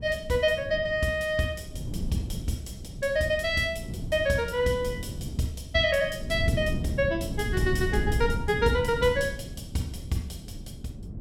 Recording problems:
wind noise; below 180 Hz, SNR 8 dB

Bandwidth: 17.5 kHz